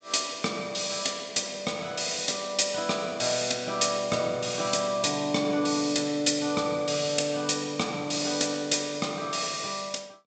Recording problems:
treble missing; nothing above 8 kHz

